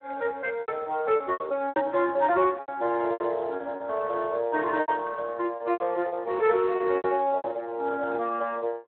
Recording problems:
phone line; 320 Hz to 3.5 kHz, Speex
lost packets; 11% of the sound replaced, filled with repeated pitch periods

